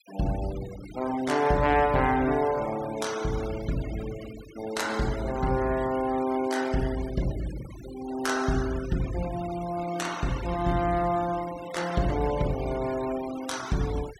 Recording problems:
noise reduction artefacts; signal-to-artefact ratio 15 dB

